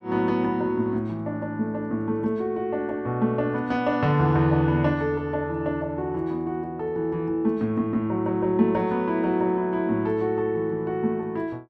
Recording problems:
none

